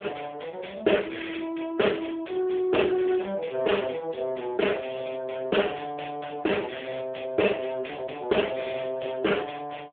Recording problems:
telephone audio; 260 Hz to 3.4 kHz, AMR-NB

